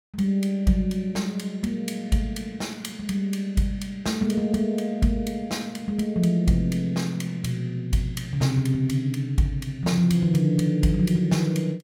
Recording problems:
none

